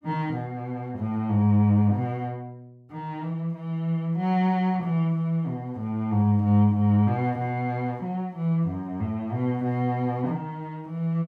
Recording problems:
none

